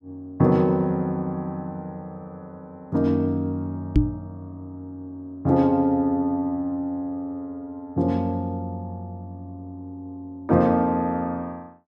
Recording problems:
microphone thump; at 4 s; peak +9 dB vs average level

